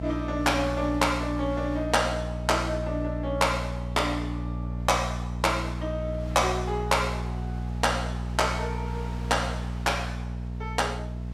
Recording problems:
mains hum; 60 Hz, harmonics up to 660 Hz, SNR 5 dB
wind on the microphone; below 2.6 kHz, SNR 22 dB

